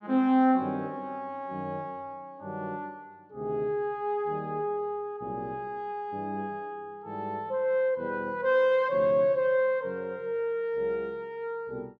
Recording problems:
none

